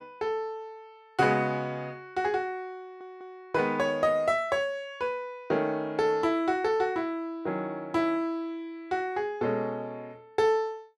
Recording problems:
stutter; at 3 s

